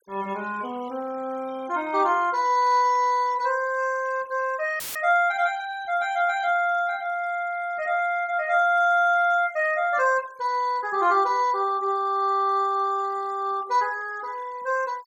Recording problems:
noise reduction artefacts; signal-to-artefact ratio 25 dB
audio cutting out; at 5 s; filled with static

